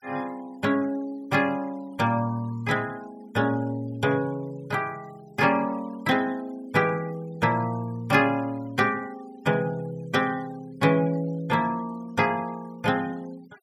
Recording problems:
noise reduction artefacts; signal-to-artefact ratio 25 dB

